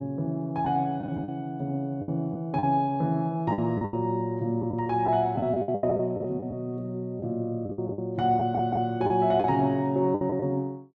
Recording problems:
lost packets; 10% of the sound replaced, filled with the last packet
audio stuttering; at 8.5 s

